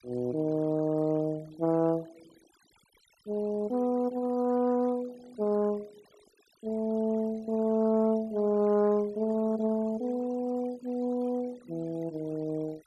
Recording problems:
denoising artefacts; signal-to-artefact ratio 25 dB

